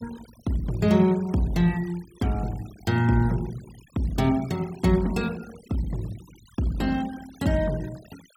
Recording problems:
denoising artefacts; signal-to-artefact ratio 22 dB

